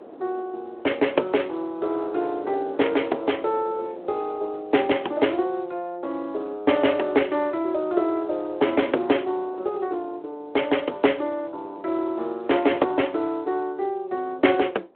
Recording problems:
phone line; 280 Hz to 3.4 kHz, Speex
wind noise; below 660 Hz, SNR 21 dB

